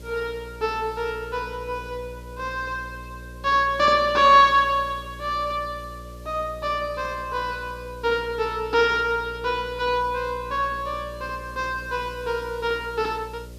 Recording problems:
electrical hum; 60 Hz, harmonics up to 600 Hz, SNR 18 dB
hiss; slope -1 dB per octave, SNR 29 dB

